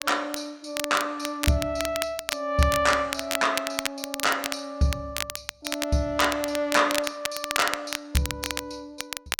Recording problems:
crackle; vinyl, SNR 5 dB

